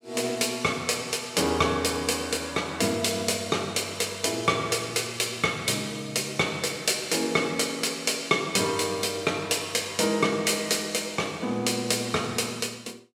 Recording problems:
none

